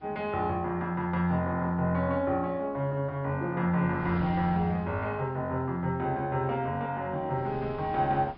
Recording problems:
low-pass filter; nothing above 5.3 kHz
wind noise; below 590 Hz, SNR 16 dB

